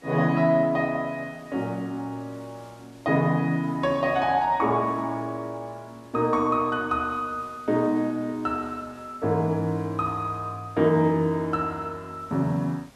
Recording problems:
background hiss; slope -3 dB per octave, SNR 28 dB

